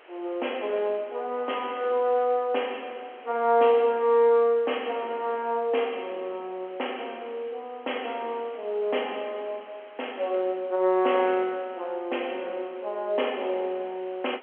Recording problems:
telephone audio; 300 Hz to 3.3 kHz, G.711
hiss; SNR 24 dB

